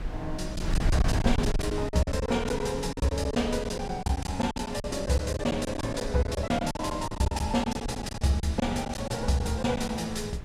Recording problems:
wind on the microphone; below 120 Hz, SNR 8 dB
lost packets; 14% of the sound replaced, filled with silence

